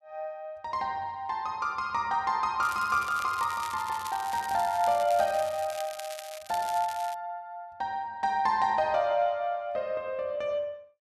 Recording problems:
crackling; from 2.5 to 7 s; loose cable, SNR 14 dB

